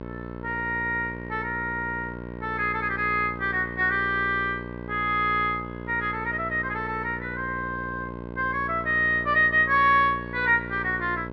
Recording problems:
hum; 60 Hz, harmonics up to 1.7 kHz, SNR 12 dB

